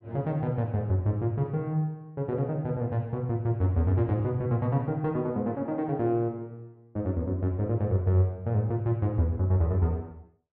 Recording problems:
none

